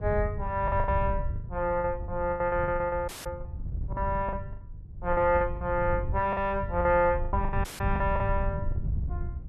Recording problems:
wind on the microphone; below 100 Hz, SNR 6 dB
packet loss; 13% of the sound replaced, filled with the last packet
dropout; at 3 s and at 7.5 s

